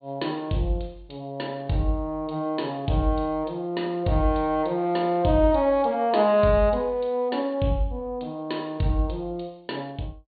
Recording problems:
treble cut off; nothing above 4.5 kHz

